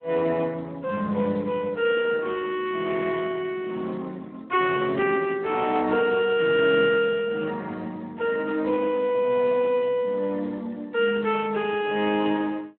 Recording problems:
phone line; 220 Hz to 3.3 kHz, Speex

